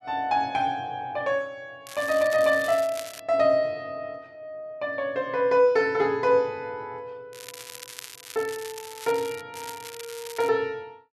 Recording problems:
crackle; from 2 to 3 s, from 7.5 to 9.5 s and at 9.5 s; loose cable, SNR 15 dB

